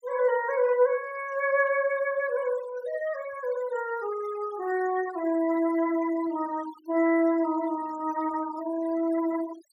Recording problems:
noise reduction artefacts; signal-to-artefact ratio 18 dB

